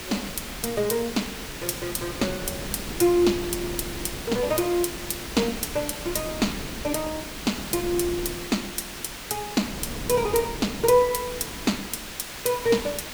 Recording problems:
hiss; slope -1 dB per octave, SNR 9 dB
wind on the microphone; below 390 Hz, SNR 13 dB

